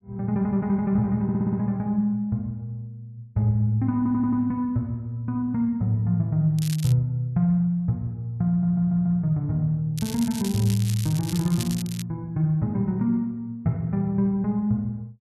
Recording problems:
stutter; at 1 s, at 4 s and at 8.5 s
crackling; at 6.5 s and from 10 to 12 s; loose cable, SNR 13 dB

